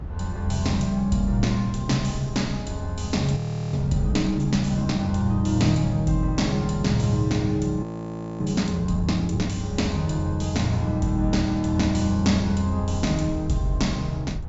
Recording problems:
low-pass filter; nothing above 8 kHz
rumble; below 86 Hz, SNR 13 dB
audio freezing; at 3.5 s and at 8 s for 0.5 s

